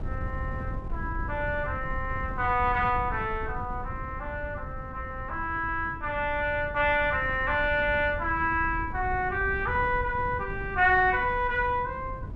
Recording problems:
wind noise; below 120 Hz, SNR 11 dB

